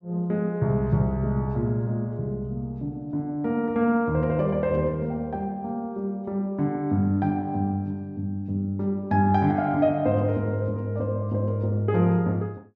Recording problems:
none

